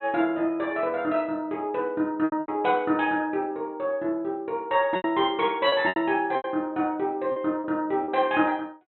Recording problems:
treble cut off; nothing above 4 kHz
packet loss; 6% of the sound replaced, filled with repeated pitch periods

